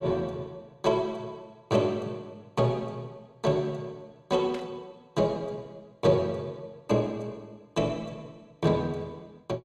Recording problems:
static burst; at 4.5 s; peak -9 dB vs average level

